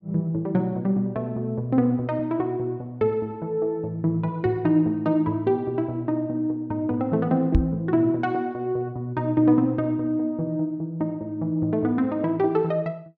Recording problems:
microphone thump; at 7.5 s; peak +8 dB vs average level

